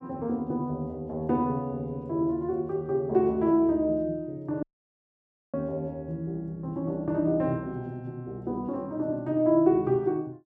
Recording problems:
dropout; at 4.5 s for 1 s

